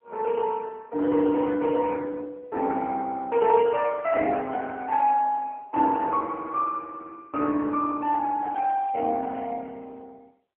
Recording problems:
phone line; 220 Hz to 3.3 kHz, AMR-NB

